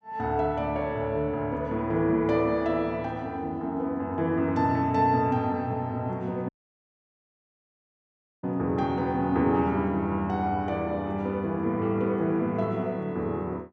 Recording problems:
audio cutting out; at 6.5 s for 2 s

